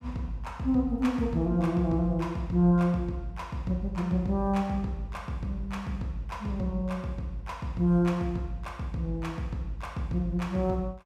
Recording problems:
none

